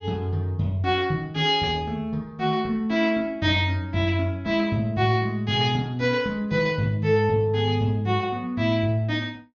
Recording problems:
treble cut off; nothing above 7 kHz

